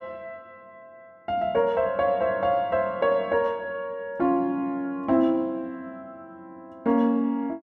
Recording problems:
none

